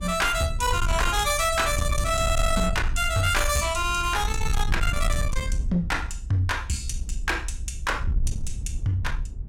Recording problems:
distorted audio; soft clipping, signal-to-distortion ratio 11 dB
low-frequency rumble; below 76 Hz, SNR 5 dB

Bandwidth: 16.5 kHz